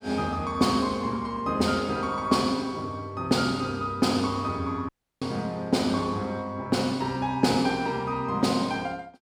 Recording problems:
audio cutting out; at 5 s

